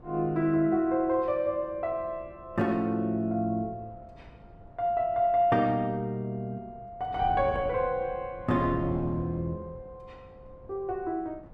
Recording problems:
wind on the microphone; below 360 Hz, SNR 18 dB

